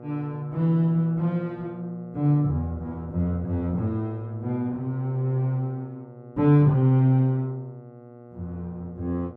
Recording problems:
mains hum; 60 Hz, harmonics up to 1.4 kHz, SNR 20 dB

